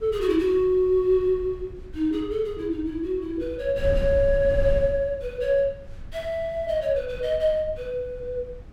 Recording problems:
wind on the microphone; below 84 Hz, SNR 13 dB

